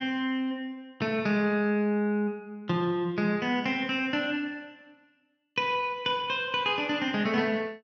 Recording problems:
none

